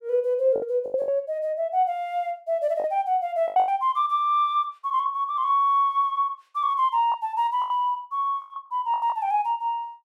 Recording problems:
packet loss; 7% of the sound replaced, filled with the last packet

